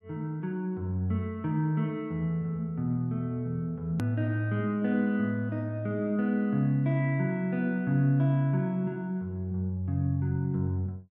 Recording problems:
click at an edit; at 4 s

